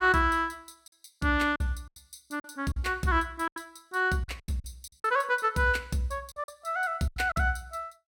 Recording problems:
packet loss; 10% of the sound replaced, filled with silence

